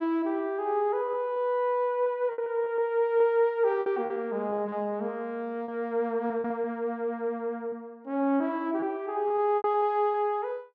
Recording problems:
packet loss; 8% of the sound replaced, filled with repeated pitch periods

